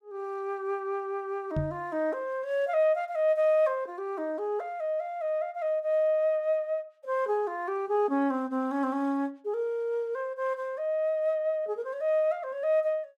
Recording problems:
microphone thump; at 1.5 s; peak +1 dB vs average level

